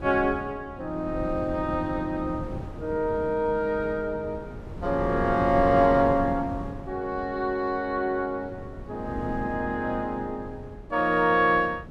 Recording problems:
wind on the microphone; below 270 Hz, SNR 12 dB

